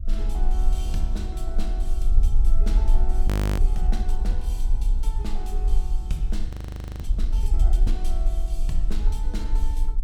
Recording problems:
low-frequency rumble; below 44 Hz, strongest tone 20 Hz, SNR -12 dB
audio freezing; at 3.5 s and at 6.5 s for 0.5 s

